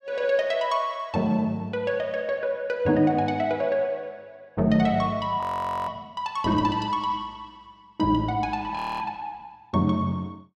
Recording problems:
frozen audio; at 5.5 s and at 9 s

